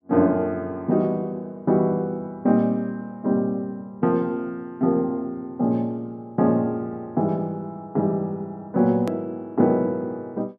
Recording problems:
click at an edit; at 9 s

